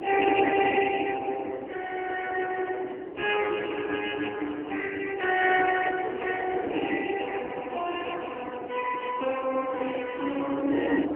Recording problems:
phone line; 260 Hz to 2.7 kHz, AMR-NB
wind on the microphone; below 480 Hz, SNR 7 dB

